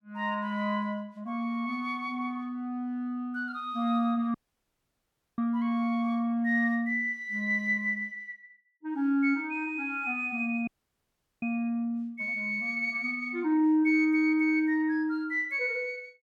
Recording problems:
dropout; at 4.5 s for 1 s and at 11 s for 1 s

